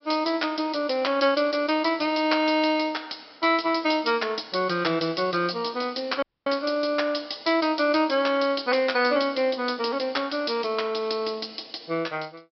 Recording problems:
treble missing; nothing above 5.5 kHz
audio cutting out; at 6 s

